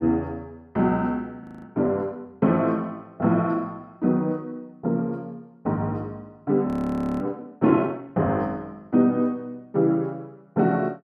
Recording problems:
frozen audio; at 1.5 s and at 6.5 s for 0.5 s

